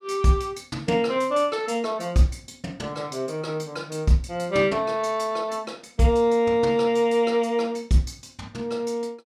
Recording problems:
none

